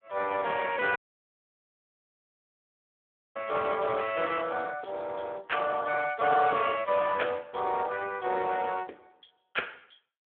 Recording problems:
telephone audio; 320 Hz to 3.3 kHz, Speex
audio cutting out; at 1 s for 2.5 s

